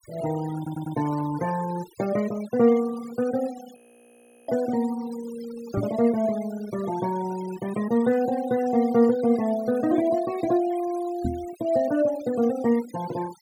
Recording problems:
denoising artefacts; signal-to-artefact ratio 18 dB
stutter; at 0.5 s
audio freezing; at 4 s for 0.5 s
microphone bump; at 6 s and at 11 s; peak +1 dB vs average level

